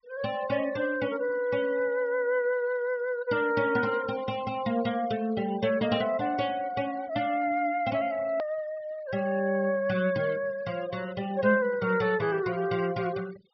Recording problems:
treble missing; nothing above 5.5 kHz
noise reduction artefacts; signal-to-artefact ratio 21 dB
click at an edit; at 8.5 s

